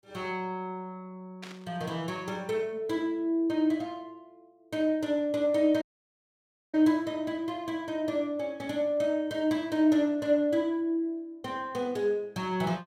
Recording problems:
burst of static; at 1.5 s; peak -10 dB vs average level
audio cutting out; at 6 s for 1 s

